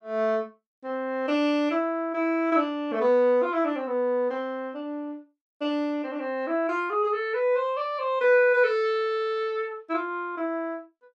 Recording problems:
none

